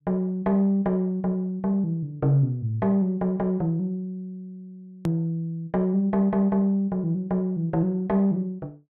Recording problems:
click at an edit; at 5 s

